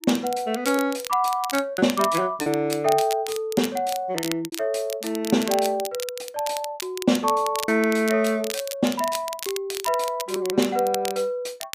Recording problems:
crackle; vinyl, SNR 10 dB
packet loss; 5% of the sound replaced, filled with repeated pitch periods

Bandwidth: 15 kHz